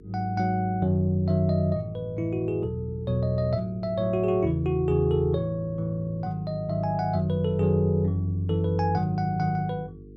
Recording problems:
hum; 50 Hz, harmonics up to 450 Hz, SNR 21 dB

